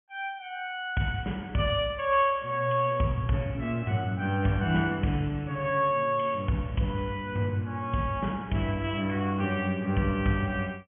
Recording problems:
low-pass filter; nothing above 3.3 kHz

